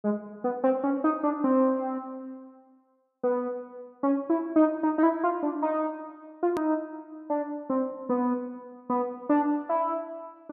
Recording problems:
edit click; at 6.5 s

